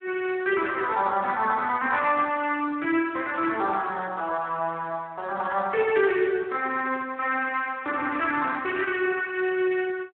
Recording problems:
phone line; 300 Hz to 3.1 kHz, Speex

